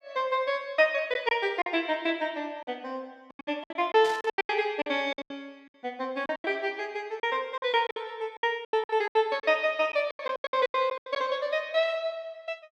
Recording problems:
lost packets; 14% of the sound replaced, filled with silence
static burst; at 4 s; peak -8 dB vs average level

